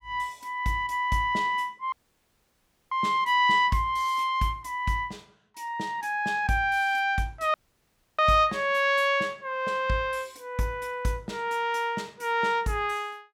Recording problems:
audio cutting out; at 2 s for 1 s and at 7.5 s for 0.5 s

